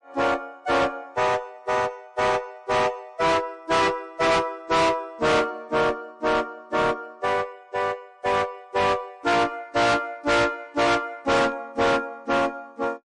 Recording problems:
lossy compression; MP3, log-spectral distance 2 dB, nothing above 9 kHz
distorted audio; hard clipping, uneven, signal-to-distortion ratio 5 dB

